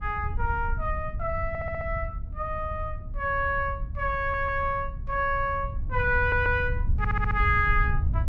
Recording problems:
wind noise; below 88 Hz, SNR 5 dB
audio stuttering; 4 times, first at 1.5 s

